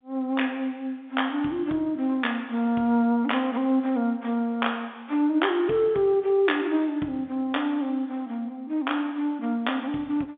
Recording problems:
telephone audio; 170 Hz to 3.6 kHz, G.711

